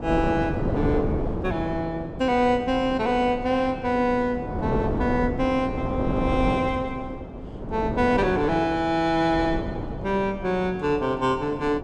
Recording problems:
wind on the microphone; below 460 Hz, SNR 6 dB

